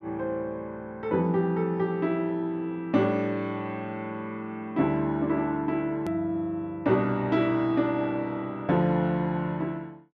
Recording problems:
hard cut with a click; at 6 s

